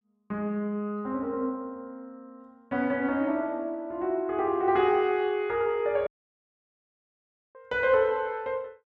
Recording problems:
audio cutting out; at 6 s for 1.5 s

